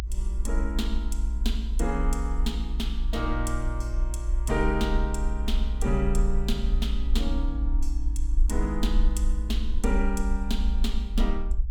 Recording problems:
low-frequency rumble; below 56 Hz, strongest tone 32 Hz, SNR -3 dB

